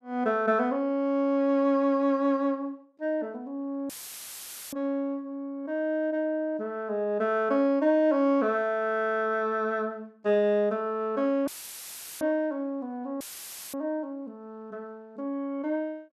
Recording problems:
dropout; at 4 s for 1 s, at 11 s for 0.5 s and at 13 s for 0.5 s; filled with static

